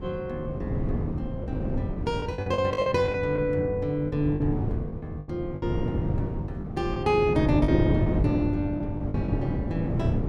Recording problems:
wind noise; below 270 Hz, SNR 2 dB
packet loss; 8% of the sound replaced, filled with the last packet

